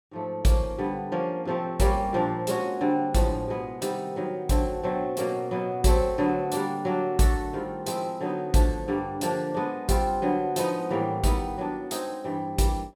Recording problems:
none

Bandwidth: 18.5 kHz